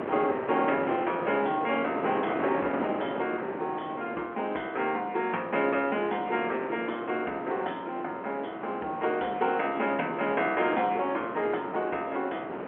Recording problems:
telephone audio; 280 Hz to 3.2 kHz, G.711
wind noise; below 940 Hz, SNR 7 dB

